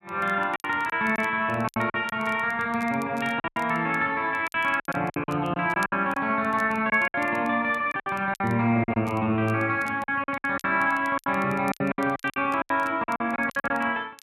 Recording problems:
crackling; vinyl, SNR 27 dB
packet loss; 13% of the sound replaced, filled with silence

